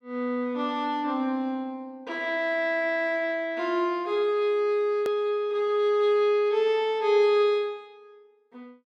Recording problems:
hard cut with a click; at 5 s

